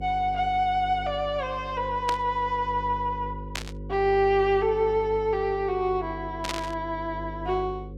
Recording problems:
electrical hum; 50 Hz, harmonics up to 550 Hz, SNR 13 dB
static burst; at 2 s, at 3.5 s and at 6.5 s; peak 0 dB vs average level

